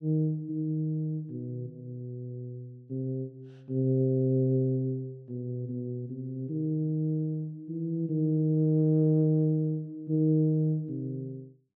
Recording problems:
none

